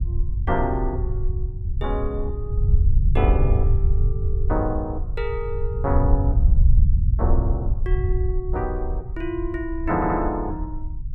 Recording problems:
rumble; below 80 Hz, SNR -4 dB
audio stuttering; at 10 s

